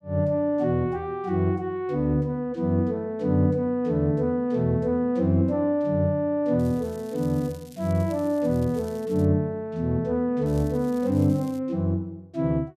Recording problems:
crackle; from 6.5 to 9.5 s and from 10 to 12 s; loose cable, SNR 26 dB

